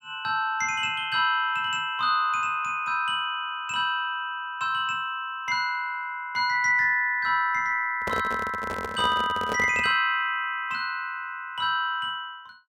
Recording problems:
handling noise; from 8 to 10 s; peak -2 dB vs average level

